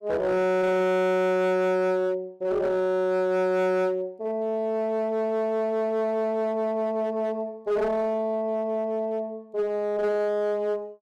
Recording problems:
distortion; hard clipping, uneven, signal-to-distortion ratio 7 dB

